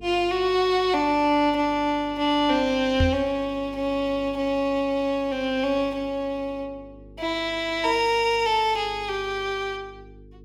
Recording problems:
hum; 50 Hz, harmonics up to 450 Hz, SNR 22 dB
microphone bump; at 3 s; peak +3 dB vs average level

